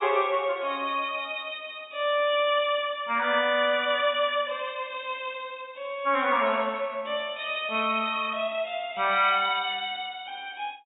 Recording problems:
low-pass filter; nothing above 4 kHz

